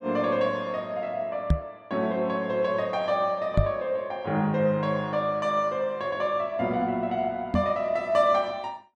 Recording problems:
microphone bump; at 1.5 s, at 3.5 s and at 7.5 s; peak +7 dB vs average level

